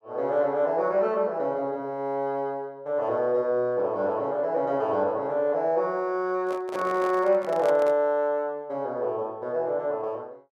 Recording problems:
handling noise; from 6.5 to 8 s; peak -4 dB vs average level

